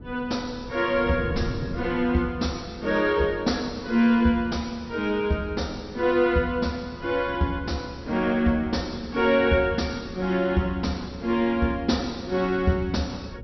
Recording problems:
treble missing; nothing above 5.9 kHz
wind noise; below 230 Hz, SNR 16 dB

